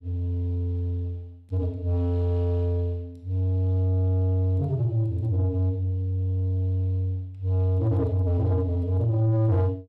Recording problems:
distortion; soft clipping, signal-to-distortion ratio 11 dB

